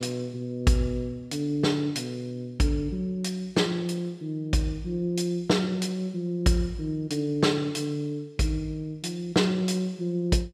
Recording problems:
none

